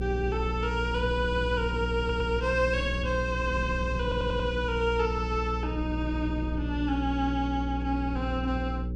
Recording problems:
hum; 60 Hz, harmonics up to 540 Hz, SNR 3 dB
wind on the microphone; below 230 Hz, SNR 14 dB
stutter; at 2 s and at 4 s

